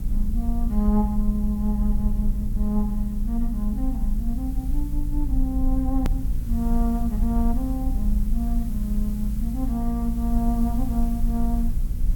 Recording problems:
mains hum; 60 Hz, harmonics up to 540 Hz, SNR 8 dB
hiss; slope -1 dB per octave, SNR 20 dB
low-frequency rumble; below 48 Hz, strongest tone 28 Hz, SNR 0 dB
click at an edit; at 6 s

